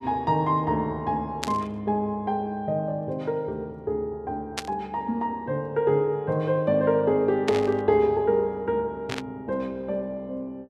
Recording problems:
burst of static; 4 times, first at 1.5 s; peak +1 dB vs average level

